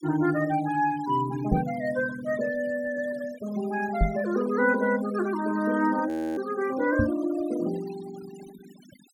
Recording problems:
denoising artefacts; signal-to-artefact ratio 18 dB
microphone bump; at 1.5 s, at 4 s and at 7 s; peak +6 dB vs average level
frozen audio; at 6 s

